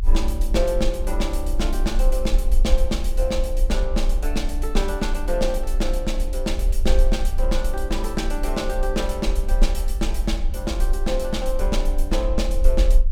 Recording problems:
rumble; below 44 Hz, strongest tone 28 Hz, SNR -1 dB

